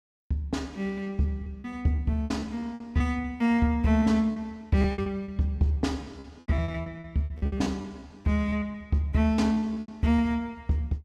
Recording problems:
packet loss; 14% of the sound replaced, filled with repeated pitch periods

